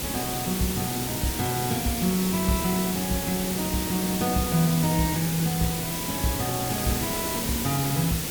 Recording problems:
hiss; SNR 1 dB

